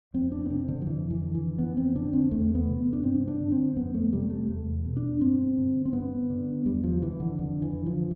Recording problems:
none

